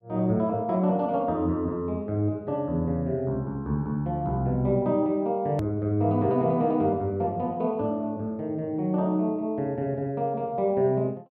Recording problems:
click at an edit; at 5.5 s

